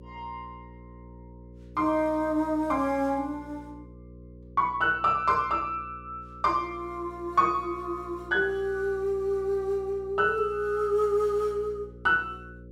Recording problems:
hum; 60 Hz, harmonics up to 540 Hz, SNR 20 dB

